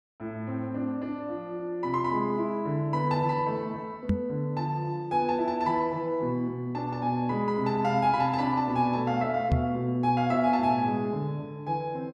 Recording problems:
knock on the microphone; at 4 s and at 9.5 s; peak +6 dB vs average level

